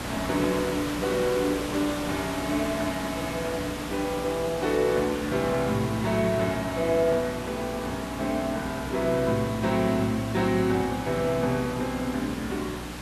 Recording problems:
electrical hum; 60 Hz, harmonics up to 300 Hz, SNR 14 dB
background hiss; slope -4 dB per octave, SNR 9 dB

